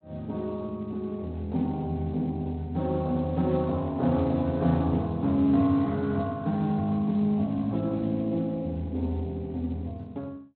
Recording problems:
codec artefacts; Speex, log-spectral distance 2 dB, nothing above 4.1 kHz

